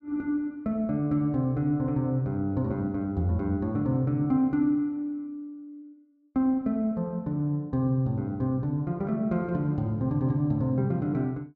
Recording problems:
none

